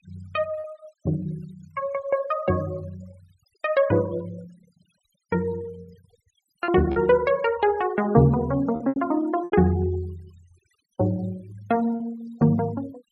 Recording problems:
noise reduction artefacts; signal-to-artefact ratio 24 dB
packet loss; 4% of the sound replaced, filled with repeated pitch periods

